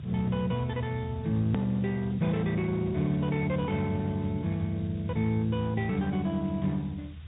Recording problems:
treble cut off; nothing above 3.6 kHz
lossy codec; Speex, log-spectral distance 4 dB
background hiss; SNR 27 dB
low-frequency rumble; below 130 Hz, strongest tone 78 Hz, SNR 12 dB
hard cut with a click; at 1.5 s

